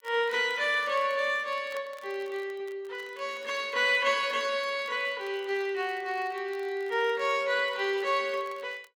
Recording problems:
crackling; vinyl, SNR 28 dB

